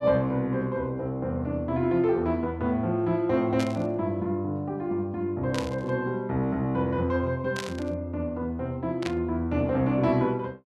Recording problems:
burst of static; 4 times, first at 3.5 s; peak -2 dB vs average level

